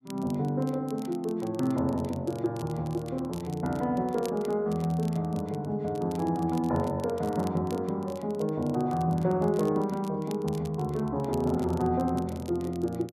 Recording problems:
crackle; vinyl, SNR 22 dB

